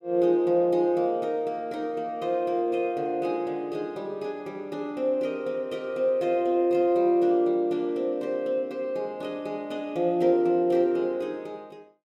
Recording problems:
none

